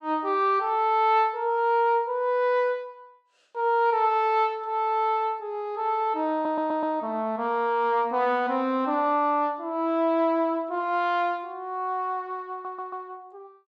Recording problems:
audio stuttering; at 6.5 s and at 13 s

